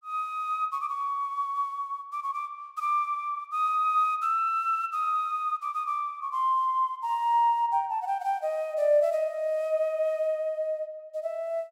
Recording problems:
none

